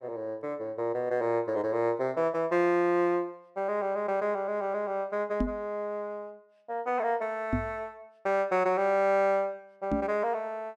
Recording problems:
knock on the microphone; at 5.5 s, at 7.5 s and at 10 s; peak +4 dB vs average level

